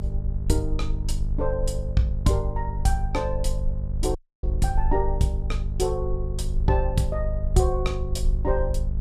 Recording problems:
hum; 50 Hz, harmonics up to 600 Hz, SNR 5 dB
low-frequency rumble; below 60 Hz, strongest tone 32 Hz, SNR 3 dB
dropout; at 4 s

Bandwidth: 15 kHz